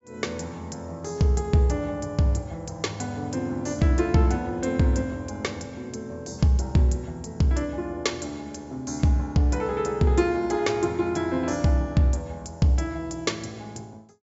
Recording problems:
low-pass filter; nothing above 8 kHz

